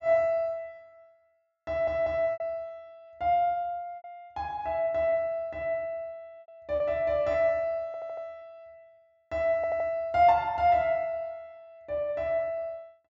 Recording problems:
low-pass filter; nothing above 8 kHz
lost packets; 4% of the sound replaced, filled with repeated pitch periods
audio stuttering; at 1.5 s, at 8 s and at 9.5 s

